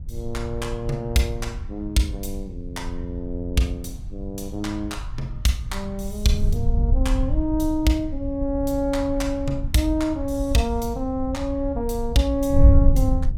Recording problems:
wind on the microphone; below 78 Hz, SNR 3 dB

